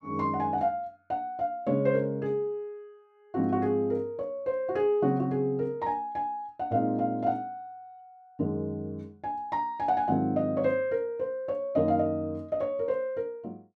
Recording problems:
none

